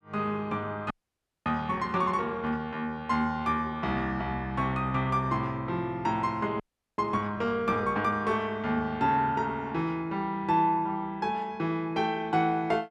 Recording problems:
frozen audio; at 1 s for 0.5 s and at 6.5 s

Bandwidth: 13 kHz